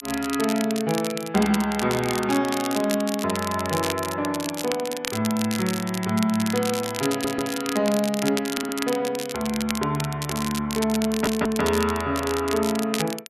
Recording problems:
crackling; vinyl, SNR 8 dB
audio stuttering; at 7 s, at 8.5 s and at 11 s

